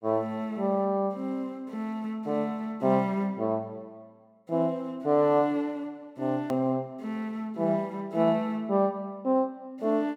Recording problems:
hard cut with a click; at 6.5 s

